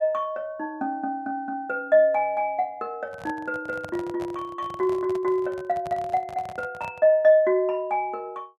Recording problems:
handling noise; from 3 to 7 s; peak -9 dB vs average level

